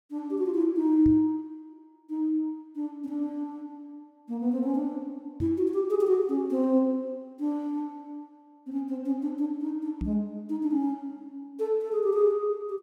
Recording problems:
microphone bump; at 1 s, at 5.5 s and at 10 s; peak -1 dB vs average level

